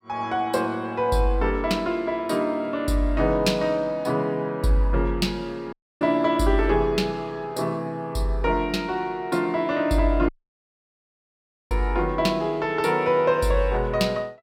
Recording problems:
audio cutting out; at 5.5 s and at 10 s for 1.5 s

